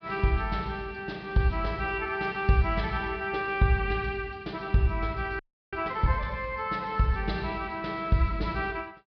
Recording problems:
low-pass filter; nothing above 5.5 kHz
audio freezing; at 5.5 s

